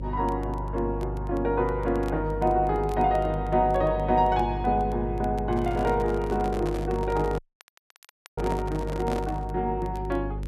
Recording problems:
mains hum; 50 Hz, harmonics up to 550 Hz, SNR 7 dB
crackling; vinyl, SNR 29 dB
handling noise; from 5.5 to 9.5 s; peak -2 dB vs average level
dropout; at 7.5 s for 1 s

